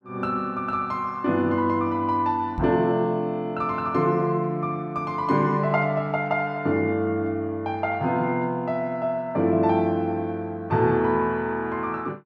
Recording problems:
microphone thump; at 2.5 s; peak -4 dB vs average level

